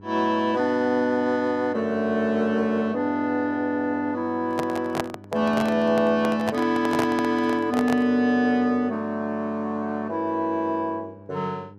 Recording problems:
electrical hum; 50 Hz, harmonics up to 900 Hz, SNR 22 dB
handling noise; from 4.5 to 8 s; peak +1 dB vs average level

